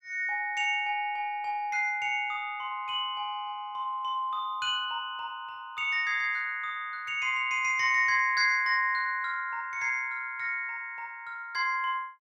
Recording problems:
none

